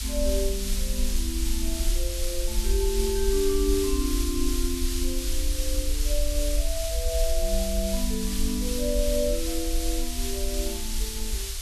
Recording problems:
background hiss; slope +3 dB per octave, SNR 2 dB
rumble; below 52 Hz, SNR 1 dB

